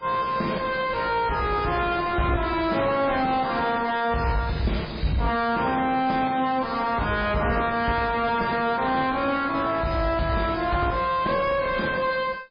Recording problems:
lossy codec; AAC, then MP3, log-spectral distance 4 dB
distortion; soft clipping, signal-to-distortion ratio 3 dB

